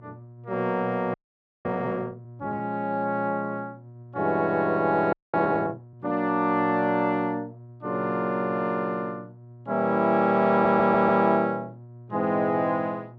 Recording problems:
hum; 60 Hz, harmonics up to 960 Hz, SNR 20 dB
audio freezing; at 1 s for 0.5 s and at 5 s
audio stuttering; at 11 s

